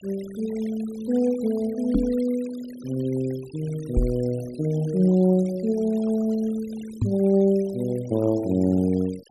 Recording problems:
denoising artefacts; signal-to-artefact ratio 23 dB
knock on the microphone; at 2 s, at 4 s and at 7 s; peak +5 dB vs average level

